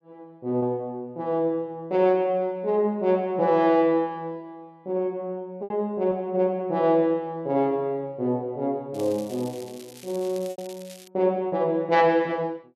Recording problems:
lost packets; 2% of the sound replaced, filled with repeated pitch periods
crackling; from 9 to 11 s; loose cable, SNR 21 dB

